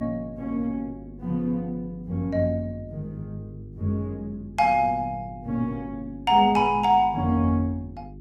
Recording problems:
hum; 50 Hz, harmonics up to 400 Hz, SNR 18 dB

